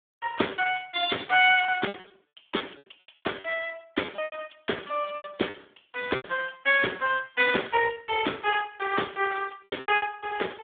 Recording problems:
phone line; 280 Hz to 3.6 kHz, Speex
lost packets; 8% of the sound replaced, filled with repeated pitch periods

